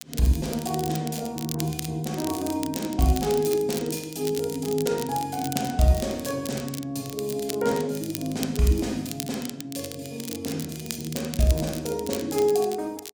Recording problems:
crackle; vinyl, SNR 10 dB

